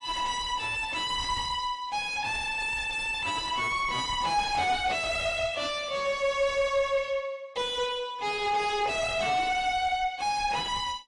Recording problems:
lossy codec; AAC, log-spectral distance 3 dB, nothing above 10.1 kHz
distorted audio; soft clipping, signal-to-distortion ratio 5 dB

